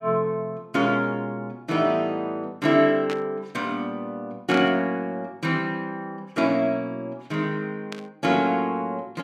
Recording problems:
burst of static; at 3 s, at 4.5 s and at 8 s; peak -4 dB vs average level

